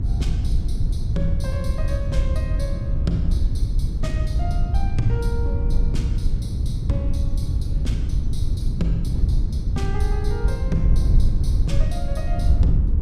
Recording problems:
hum; 60 Hz, harmonics up to 300 Hz, SNR 5 dB
rumble; below 66 Hz, SNR -4 dB
wind on the microphone; below 92 Hz, SNR -8 dB

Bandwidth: 15.5 kHz